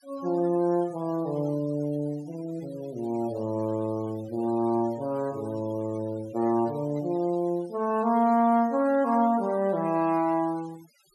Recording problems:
noise reduction artefacts; signal-to-artefact ratio 23 dB

